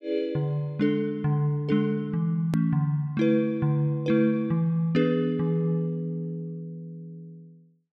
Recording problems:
edit click; at 2.5 s

